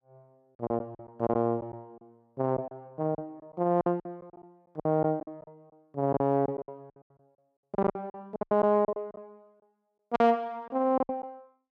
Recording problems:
lost packets; 15% of the sound replaced, filled with silence

